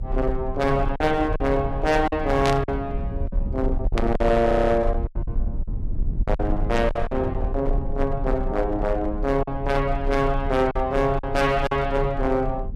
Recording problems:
distorted audio; hard clipping, uneven, signal-to-distortion ratio 10 dB
low-frequency rumble; below 70 Hz, strongest tone 32 Hz, SNR 6 dB
lost packets; 6% of the sound replaced, filled with silence
static burst; at 2.5 s and at 4 s; peak -1 dB vs average level
stutter; at 4.5 s

